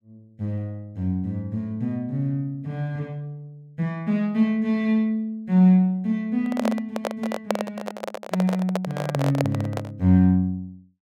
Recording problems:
microphone handling noise; from 6.5 to 10 s; peak +4 dB vs average level

